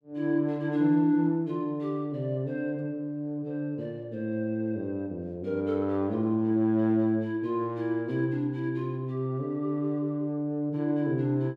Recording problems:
none

